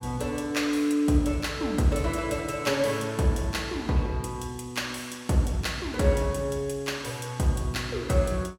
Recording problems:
none

